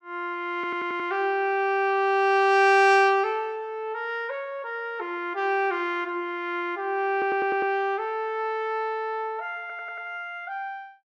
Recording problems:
audio stuttering; at 0.5 s, at 7 s and at 9.5 s

